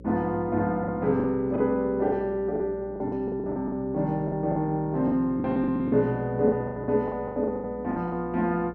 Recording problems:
hum; 60 Hz, harmonics up to 540 Hz, SNR 19 dB
packet loss; 14% of the sound replaced, filled with the last packet

